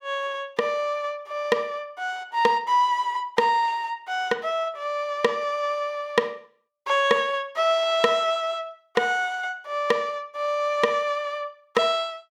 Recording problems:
none

